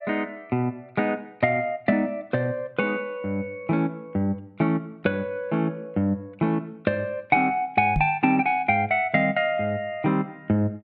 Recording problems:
microphone thump; at 8 s; peak +2 dB vs average level

